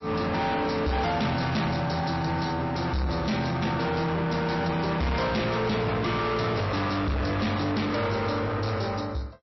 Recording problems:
lossy compression; MP3, log-spectral distance 5 dB, nothing above 5.7 kHz
distorted audio; soft clipping, signal-to-distortion ratio 7 dB

